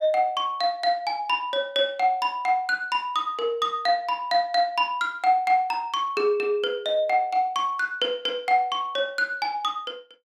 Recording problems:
none

